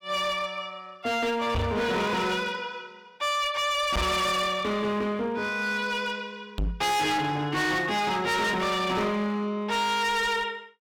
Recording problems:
distorted audio; hard clipping, signal-to-distortion ratio 6 dB
knock on the microphone; at 1.5 s, at 4 s and at 6.5 s; peak +2 dB vs average level

